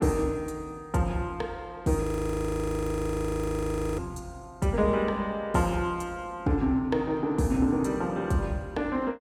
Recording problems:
frozen audio; at 2 s for 2 s

